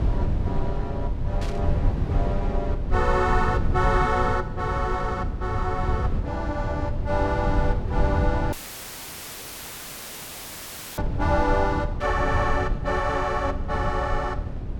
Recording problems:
rumble; below 120 Hz, SNR 1 dB
static burst; at 1.5 s and at 12 s; peak -8 dB vs average level
audio cutting out; at 8.5 s for 2.5 s; filled with static

